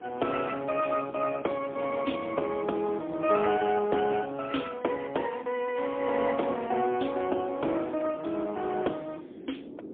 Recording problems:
phone line; 260 Hz to 2.9 kHz, AMR-NB, then MP3
wind noise; below 410 Hz, SNR 17 dB

